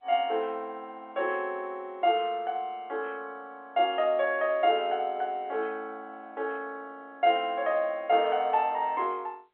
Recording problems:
telephone audio; 320 Hz to 3.6 kHz, G.711

